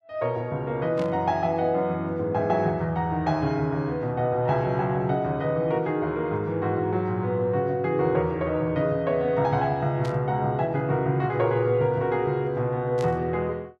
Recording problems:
burst of static; at 1 s, at 10 s and at 13 s; peak -12 dB vs average level

